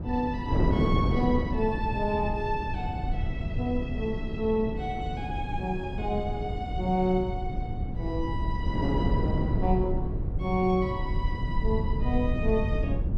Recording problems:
low-frequency rumble; below 100 Hz, SNR 3 dB
wind on the microphone; below 330 Hz, SNR 3 dB

